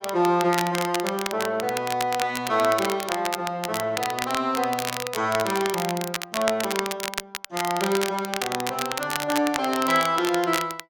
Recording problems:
crackling; vinyl, SNR 6 dB

